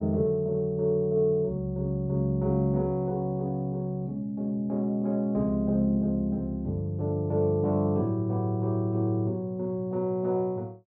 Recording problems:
none

